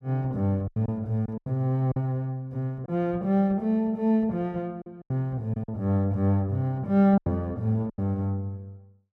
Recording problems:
packet loss; 7% of the sound replaced, filled with silence

